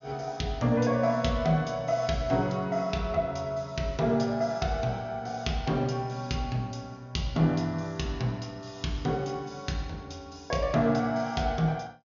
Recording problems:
treble missing; nothing above 6.9 kHz

